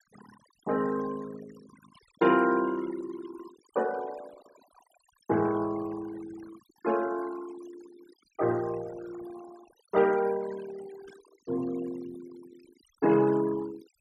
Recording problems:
denoising artefacts; signal-to-artefact ratio 17 dB
static burst; at 2 s and at 11 s; peak -30 dB vs average level

